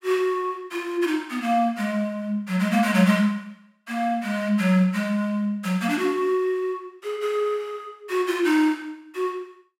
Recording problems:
none

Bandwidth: 16 kHz